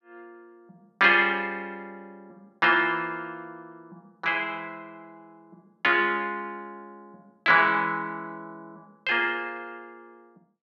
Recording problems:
none

